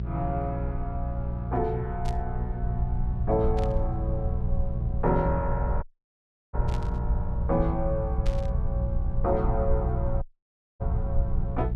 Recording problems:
electrical hum; 60 Hz, harmonics up to 420 Hz, SNR 2 dB
low-frequency rumble; below 74 Hz, SNR 1 dB
burst of static; 4 times, first at 2 s; peak -6 dB vs average level
dropout; at 6 s for 0.5 s and at 10 s for 0.5 s

